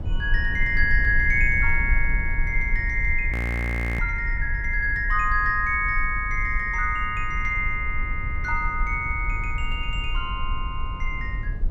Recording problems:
rumble; below 58 Hz, strongest tone 18 Hz, SNR 5 dB
audio freezing; at 3.5 s for 0.5 s

